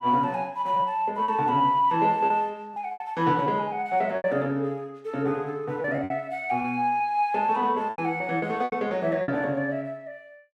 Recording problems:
lost packets; 8% of the sound replaced, filled with repeated pitch periods

